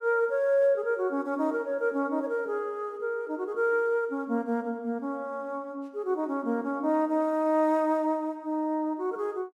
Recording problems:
none

